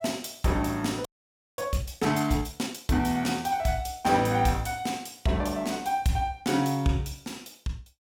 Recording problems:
frozen audio; at 1 s for 0.5 s

